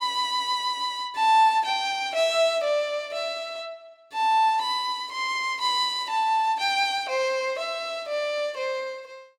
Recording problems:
none

